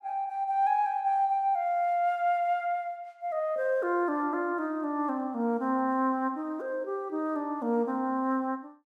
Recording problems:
none

